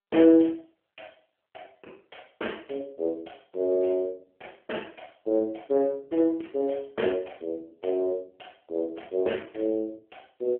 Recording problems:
phone line; 280 Hz to 3.3 kHz, AMR-NB

